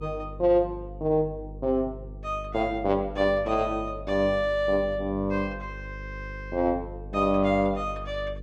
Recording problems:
hum; 50 Hz, harmonics up to 500 Hz, SNR 14 dB

